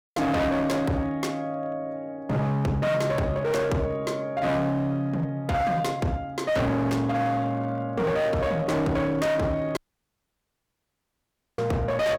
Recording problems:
distorted audio; hard clipping, signal-to-distortion ratio 7 dB
dropout; at 10 s for 2 s

